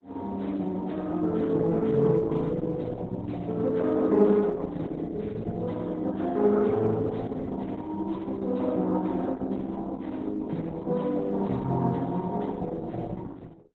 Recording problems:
lossy compression; Opus, then Opus, log-spectral distance 3 dB

